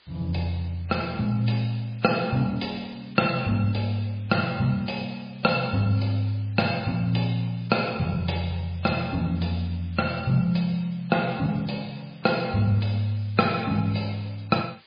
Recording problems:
codec artefacts; MP3, log-spectral distance 7 dB, nothing above 4.4 kHz
background hiss; SNR 27 dB

